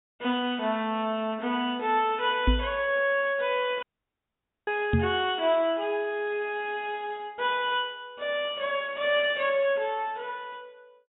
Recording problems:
treble cut off; nothing above 4 kHz
knock on the microphone; at 2.5 s and at 5 s; peak +6 dB vs average level
dropout; at 4 s for 1 s

